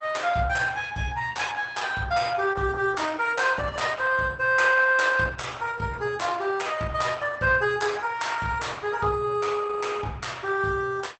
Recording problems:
lossy codec; Opus, log-spectral distance 4 dB, nothing above 8 kHz

